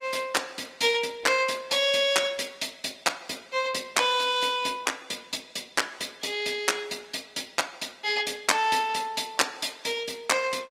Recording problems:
lossy codec; Opus, log-spectral distance 5 dB

